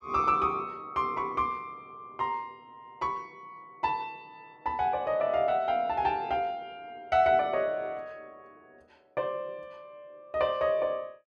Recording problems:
none

